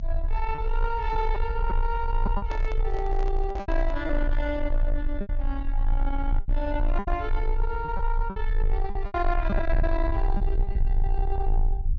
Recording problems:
treble missing; nothing above 6.9 kHz
distorted audio; soft clipping, signal-to-distortion ratio 12 dB
rumble; below 42 Hz, strongest tone 28 Hz, SNR -1 dB
lost packets; 7% of the sound replaced, filled with repeated pitch periods
microphone handling noise; from 2.5 to 4 s; peak -3 dB vs average level

